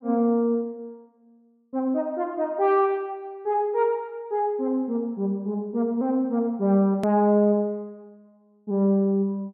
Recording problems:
hard cut with a click; at 7 s

